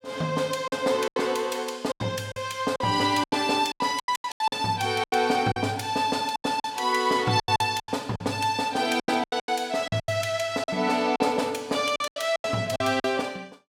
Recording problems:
lost packets; 14% of the sound replaced, filled with silence

